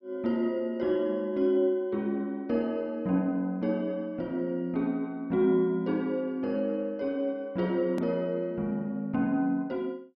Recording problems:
click at an edit; at 8 s

